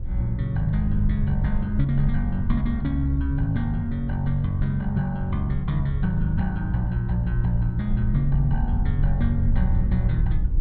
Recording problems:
wind noise; below 68 Hz, SNR 4 dB

